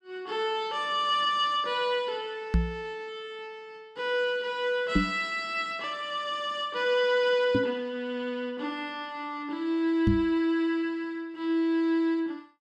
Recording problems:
knock on the microphone; 4 times, first at 2.5 s; peak +8 dB vs average level

